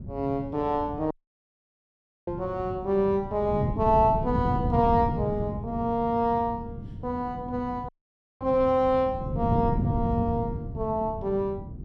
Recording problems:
wind noise; below 200 Hz, SNR 6 dB
audio cutting out; at 1 s for 1 s and at 8 s for 0.5 s

